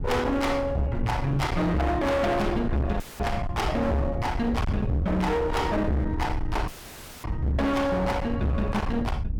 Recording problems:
distortion; hard clipping, uneven, signal-to-distortion ratio 6 dB
wind noise; below 180 Hz, SNR 6 dB
dropout; at 3 s and at 6.5 s for 0.5 s; filled with static

